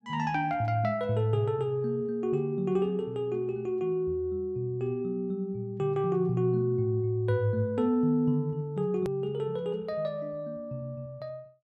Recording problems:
edit click; at 9 s

